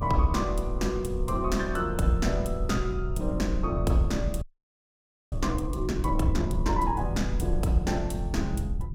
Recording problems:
hum; 50 Hz, harmonics up to 400 Hz, SNR 24 dB
low-frequency rumble; below 74 Hz, SNR 4 dB
frozen audio; at 4.5 s for 1 s

